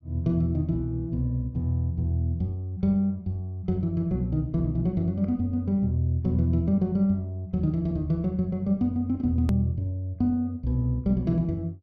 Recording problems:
hard cut with a click; at 9.5 s

